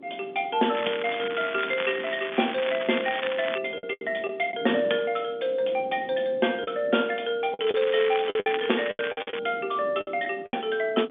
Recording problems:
phone line; 170 Hz to 3.5 kHz, G.711
wind on the microphone; below 410 Hz, SNR 18 dB
lost packets; 7% of the sound replaced, filled with the last packet
crackle; from 0.5 to 3.5 s and from 7.5 to 9.5 s; loose cable, SNR 8 dB

